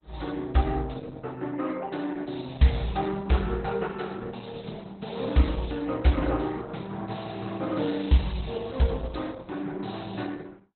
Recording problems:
lossy codec; Opus, log-spectral distance 7 dB, nothing above 4.1 kHz

